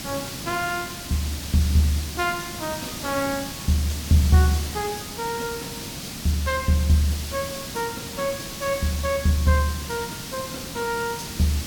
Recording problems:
hiss; SNR 7 dB

